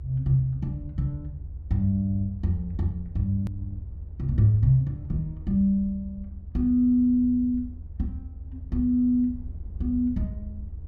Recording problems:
rumble; below 82 Hz, SNR 13 dB
edit click; at 3.5 s

